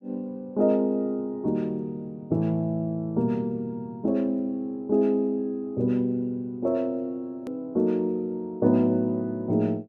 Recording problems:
hard cut with a click; at 7.5 s

